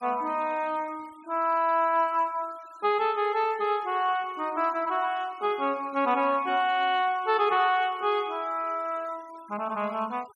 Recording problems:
noise reduction artefacts; signal-to-artefact ratio 25 dB

